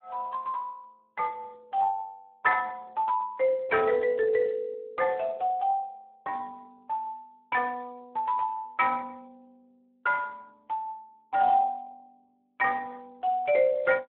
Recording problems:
phone line; 280 Hz to 3.2 kHz, Speex

